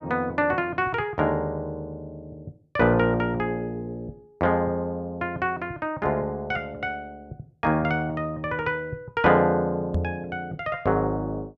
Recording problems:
knock on the microphone; at 10 s; peak +3 dB vs average level

